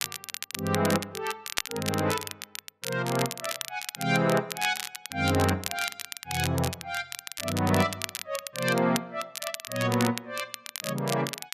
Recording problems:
crackling; vinyl, SNR 6 dB

